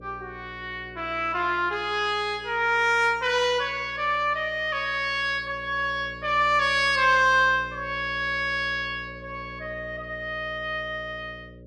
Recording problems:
hum; 60 Hz, harmonics up to 600 Hz, SNR 21 dB

